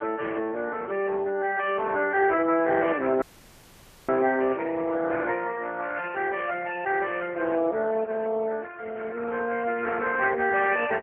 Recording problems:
telephone audio; 240 Hz to 3.3 kHz, AMR-NB
dropout; at 3 s for 1 s

